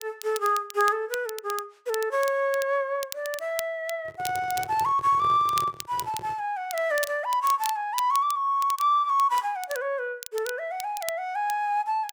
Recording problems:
crackling; vinyl, SNR 14 dB
microphone handling noise; from 4 to 6.5 s; peak -10 dB vs average level

